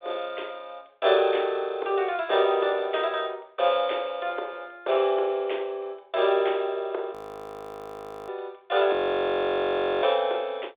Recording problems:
telephone audio; 300 Hz to 3.6 kHz, G.726
audio freezing; at 7 s for 1 s and at 9 s for 1 s

